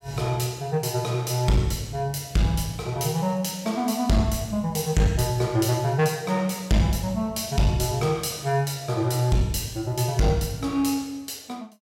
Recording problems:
distortion; hard clipping, uneven, signal-to-distortion ratio 11 dB

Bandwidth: 16.5 kHz